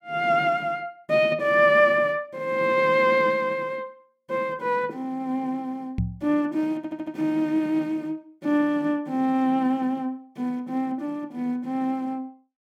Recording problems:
knock on the microphone; at 6 s; peak +2 dB vs average level
stutter; at 7 s

